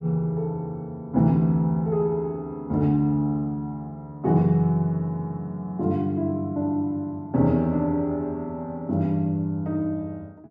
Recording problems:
none

